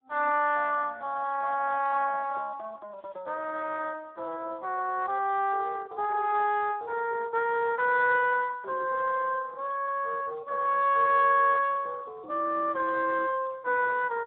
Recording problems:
phone line; 280 Hz to 3.9 kHz, Speex

